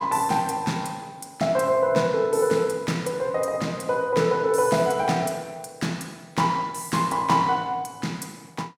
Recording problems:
none

